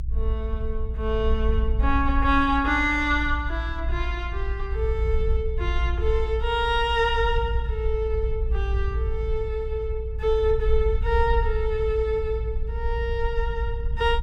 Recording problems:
rumble; below 58 Hz, SNR 2 dB

